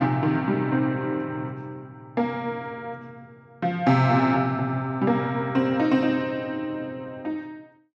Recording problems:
none

